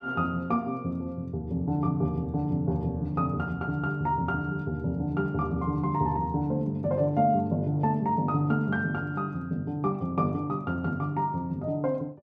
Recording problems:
none

